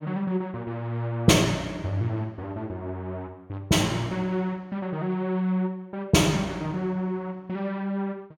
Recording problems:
none

